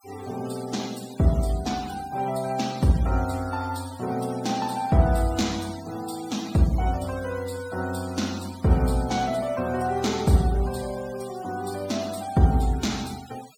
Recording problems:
noise reduction artefacts; signal-to-artefact ratio 18 dB

